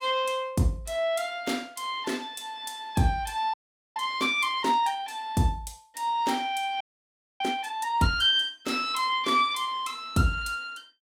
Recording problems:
frozen audio; at 3.5 s and at 7 s for 0.5 s

